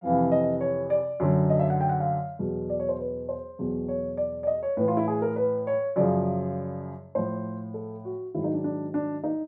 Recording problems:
none

